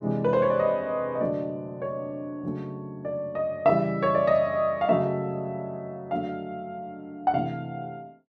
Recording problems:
none

